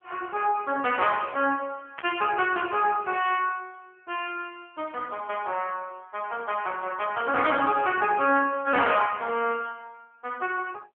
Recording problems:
telephone audio; 240 Hz to 3.4 kHz, AMR-NB
burst of static; at 2 s; peak -7 dB vs average level

